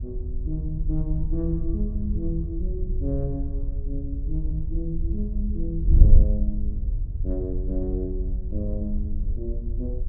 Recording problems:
wind on the microphone; below 68 Hz, SNR -5 dB

